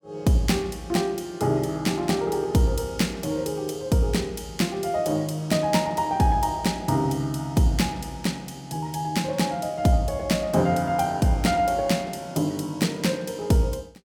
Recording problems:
none

